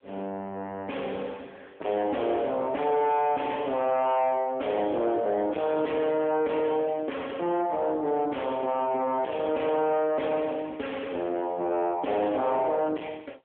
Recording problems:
telephone audio; 280 Hz to 3.3 kHz, AMR-NB
distorted audio; soft clipping, signal-to-distortion ratio 5 dB

